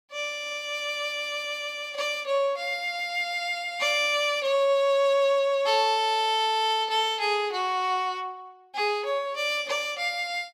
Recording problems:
none

